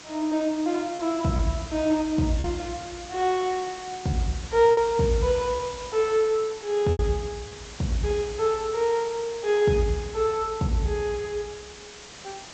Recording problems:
treble cut off; nothing above 8 kHz
background hiss; slope -1 dB per octave, SNR 15 dB
lost packets; 2% of the sound replaced, filled with repeated pitch periods

